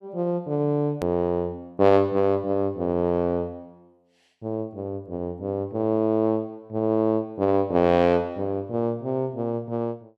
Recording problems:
hard cut with a click; at 1 s

